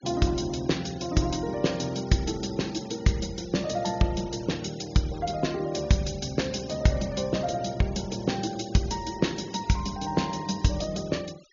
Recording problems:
low-pass filter; nothing above 7.1 kHz
denoising artefacts; signal-to-artefact ratio 20 dB

